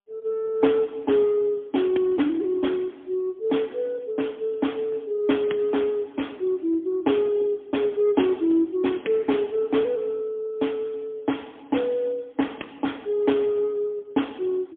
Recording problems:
phone line; 190 Hz to 3.5 kHz, AMR-NB, then MP3

